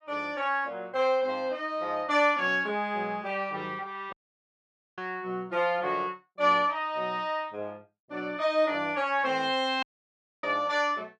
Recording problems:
audio cutting out; at 4 s for 1 s and at 10 s for 0.5 s

